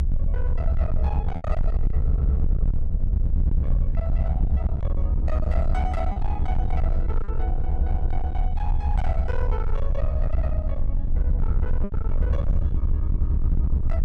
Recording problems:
distortion; hard clipping, signal-to-distortion ratio 7 dB
rumble; below 72 Hz, SNR -10 dB
packet loss; 1.7% of the sound replaced, filled with repeated pitch periods

